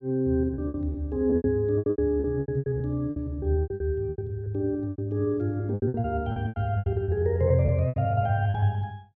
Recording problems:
lost packets; 18% of the sound replaced, filled with repeated pitch periods

